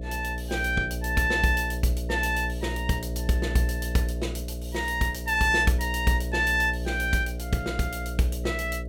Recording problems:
hum; 60 Hz, harmonics up to 660 Hz, SNR 6 dB

